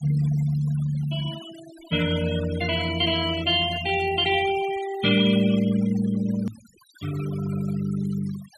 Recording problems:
denoising artefacts; signal-to-artefact ratio 15 dB
click at an edit; at 6.5 s

